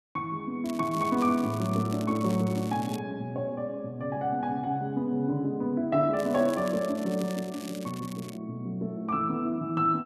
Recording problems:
crackle; from 0.5 to 3 s and from 6 to 8.5 s; loose cable, SNR 17 dB

